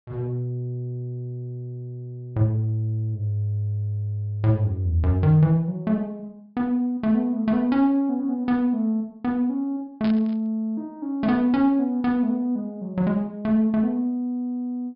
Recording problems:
low-pass filter; nothing above 5.5 kHz
burst of static; at 10 s; peak -9 dB vs average level

